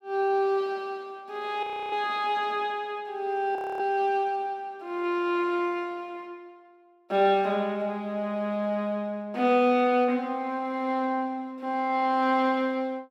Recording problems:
audio freezing; at 1.5 s and at 3.5 s

